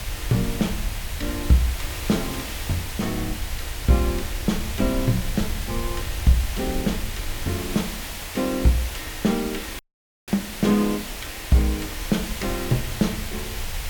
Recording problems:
hiss; slope -1 dB per octave, SNR 8 dB
rumble; below 72 Hz, SNR 10 dB
dropout; at 10 s

